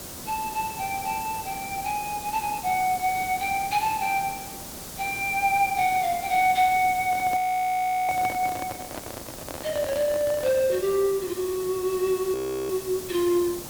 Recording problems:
hiss; SNR 11 dB
handling noise; from 7 to 11 s; peak -7 dB vs average level
frozen audio; at 7.5 s for 0.5 s and at 12 s

